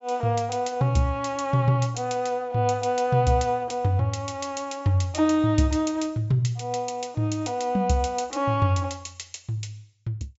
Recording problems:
treble missing; nothing above 8 kHz

